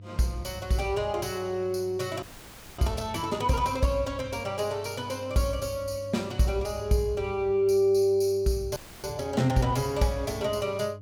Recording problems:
hum; 50 Hz, harmonics up to 500 Hz, SNR 17 dB
frozen audio; at 2 s for 0.5 s and at 9 s

